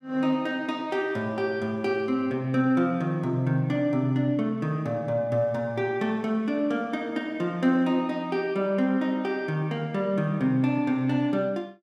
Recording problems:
none

